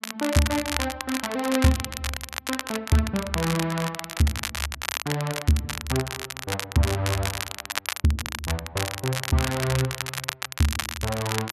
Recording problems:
crackle; vinyl, SNR 4 dB

